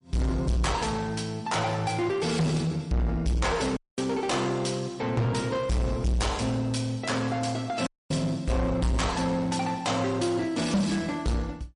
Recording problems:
lossy compression; MP3, log-spectral distance 3 dB, nothing above 10.4 kHz
distorted audio; soft clipping, signal-to-distortion ratio 6 dB
audio cutting out; at 4 s and at 8 s

